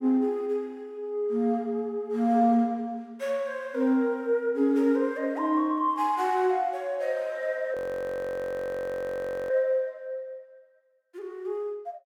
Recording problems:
frozen audio; at 8 s for 2 s

